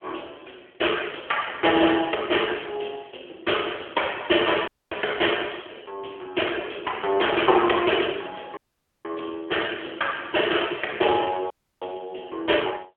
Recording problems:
telephone audio; 280 Hz to 3.4 kHz, AMR-NB
dropout; at 4.5 s, at 8.5 s and at 12 s

